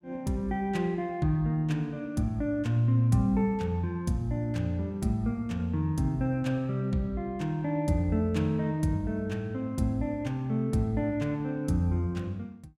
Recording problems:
none

